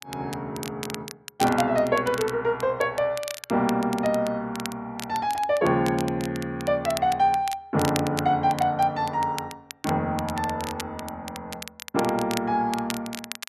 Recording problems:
crackle; vinyl, SNR 13 dB

